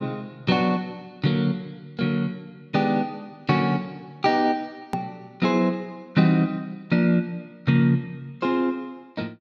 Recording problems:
hard cut with a click; at 5 s

